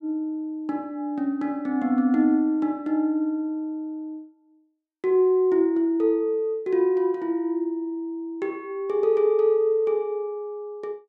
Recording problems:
none

